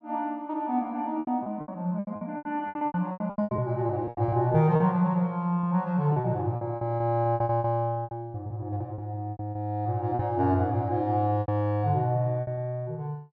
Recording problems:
packet loss; 15% of the sound replaced, filled with repeated pitch periods

